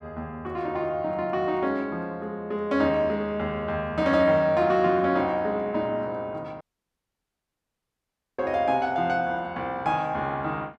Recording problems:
audio cutting out; at 6.5 s for 2 s

